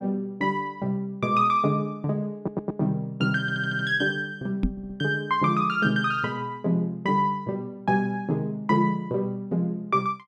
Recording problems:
audio stuttering; at 2.5 s, at 3.5 s and at 4.5 s
microphone bump; at 4.5 s; peak +4 dB vs average level

